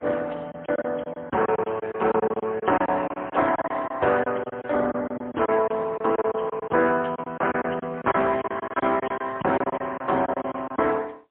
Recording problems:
telephone audio; 260 Hz to 3.5 kHz, AMR-NB, then MP3
lost packets; 13% of the sound replaced, filled with silence

